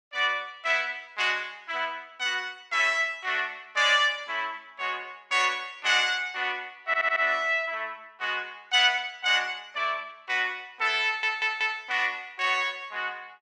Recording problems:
audio stuttering; at 7 s and at 11 s

